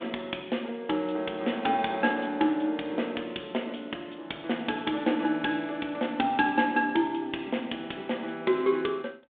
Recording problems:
telephone audio; 190 Hz to 3.6 kHz, G.726

